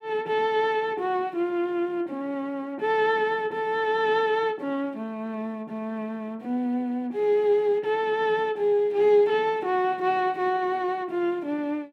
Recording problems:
none

